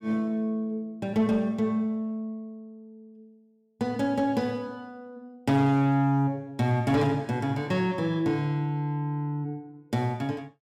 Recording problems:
distorted audio; soft clipping, signal-to-distortion ratio 11 dB

